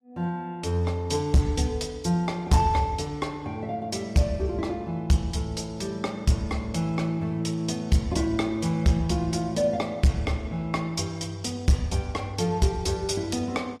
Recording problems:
lossy codec; AAC, log-spectral distance 2 dB
distorted audio; hard clipping, uneven, signal-to-distortion ratio 11 dB

